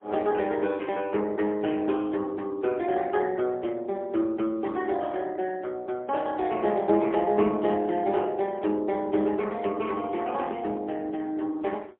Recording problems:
telephone audio; 240 Hz to 3.5 kHz, AMR-NB, then MP3

